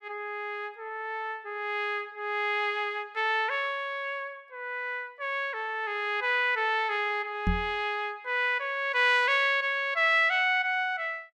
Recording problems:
knock on the microphone; at 7.5 s; peak +2 dB vs average level

